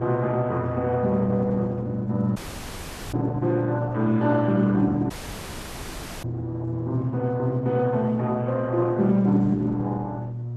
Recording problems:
lossy codec; Opus, log-spectral distance 2 dB
electrical hum; 60 Hz, harmonics up to 360 Hz, SNR 7 dB
audio cutting out; at 2.5 s for 1 s and at 5 s for 1 s

